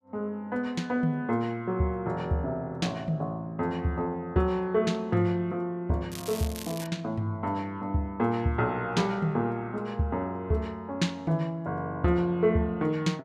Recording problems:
crackling; at 6 s; loose cable, SNR 12 dB

